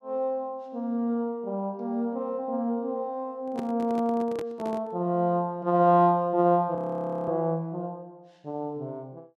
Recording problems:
microphone handling noise; from 3.5 to 5 s; peak -6 dB vs average level
frozen audio; at 7 s for 0.5 s

